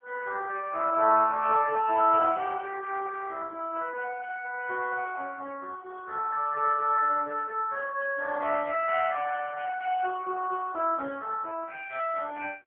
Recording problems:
telephone audio; 240 Hz to 2.9 kHz, AMR-NB

